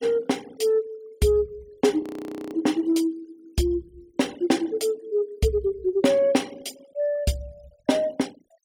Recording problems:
noise reduction artefacts; signal-to-artefact ratio 24 dB
frozen audio; at 2 s for 0.5 s

